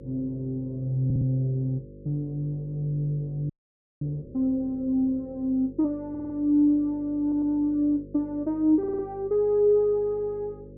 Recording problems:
hum; 50 Hz, harmonics up to 550 Hz, SNR 19 dB
stutter; 4 times, first at 1 s
frozen audio; at 3.5 s for 0.5 s

